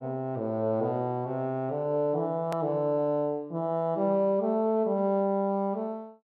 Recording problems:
click at an edit; at 2.5 s

